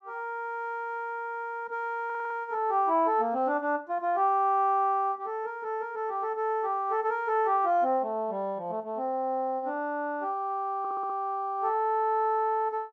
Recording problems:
stutter; at 2 s and at 11 s

